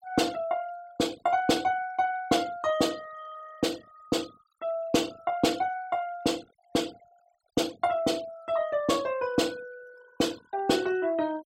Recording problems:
noise reduction artefacts; signal-to-artefact ratio 22 dB

